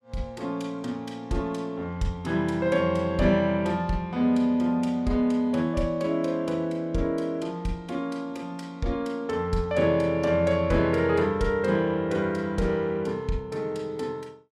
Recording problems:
none

